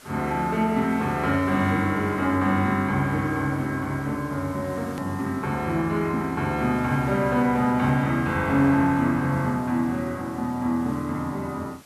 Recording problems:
hiss; SNR 24 dB
hard cut with a click; at 5 s

